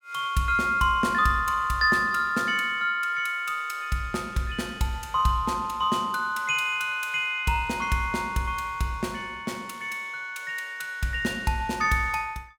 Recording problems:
none

